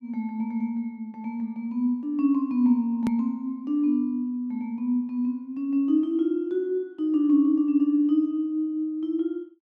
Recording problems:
click at an edit; at 3 s

